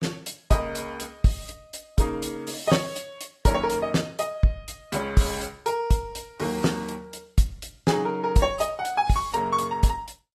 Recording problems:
codec artefacts; AAC, log-spectral distance 3 dB

